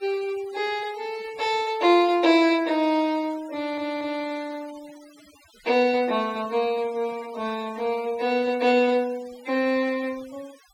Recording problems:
denoising artefacts; signal-to-artefact ratio 22 dB
audio stuttering; at 3.5 s

